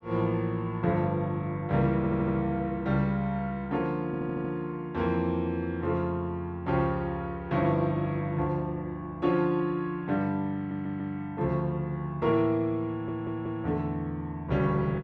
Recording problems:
audio stuttering; 4 times, first at 2 s

